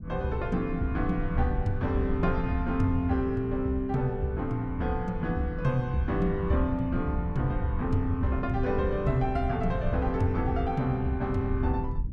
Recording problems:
low-frequency rumble; below 110 Hz, SNR 7 dB

